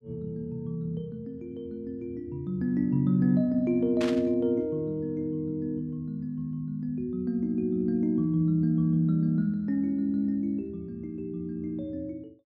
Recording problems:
burst of static; at 4 s; peak -4 dB vs average level

